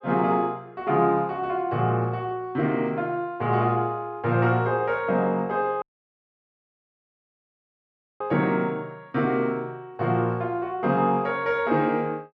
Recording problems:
audio cutting out; at 6 s for 2.5 s

